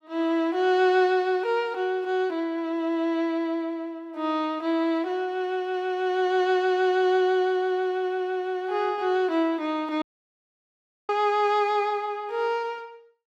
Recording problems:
dropout; at 10 s for 1 s

